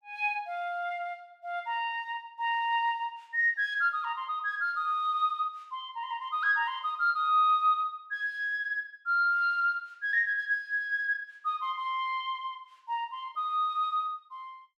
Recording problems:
none

